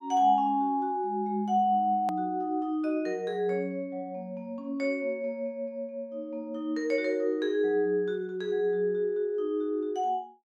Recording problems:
click at an edit; at 2 s

